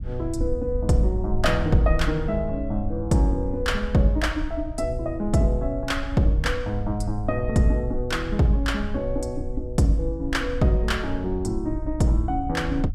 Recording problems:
rumble; below 66 Hz, SNR 8 dB

